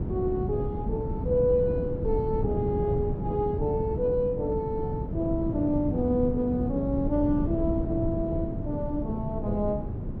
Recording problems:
wind on the microphone; below 230 Hz, SNR 3 dB

